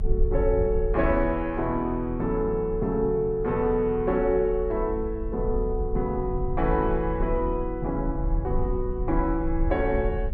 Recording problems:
low-frequency rumble; below 58 Hz, strongest tone 36 Hz, SNR 7 dB

